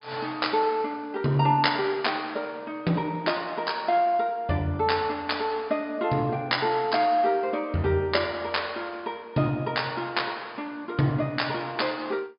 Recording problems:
treble missing; nothing above 5.1 kHz

